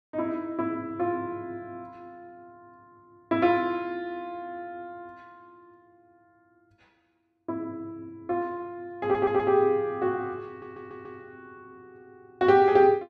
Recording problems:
stutter; at 9 s and at 10 s

